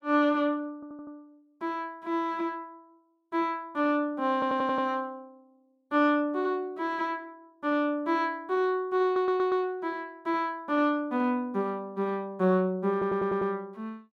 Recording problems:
stutter; 4 times, first at 1 s

